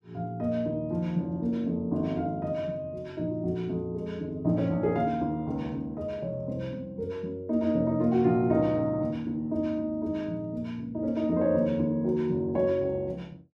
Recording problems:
none

